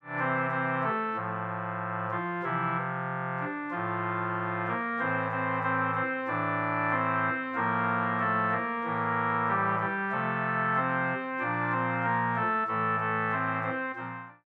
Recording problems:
none

